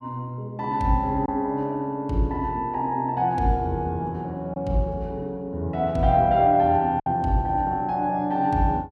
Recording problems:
packet loss; 1.1% of the sound replaced, filled with silence

